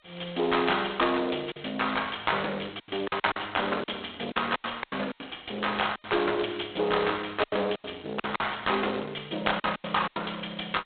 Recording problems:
phone line; 300 Hz to 3.9 kHz, G.726
distortion; soft clipping, signal-to-distortion ratio 13 dB
lost packets; 10% of the sound replaced, filled with silence

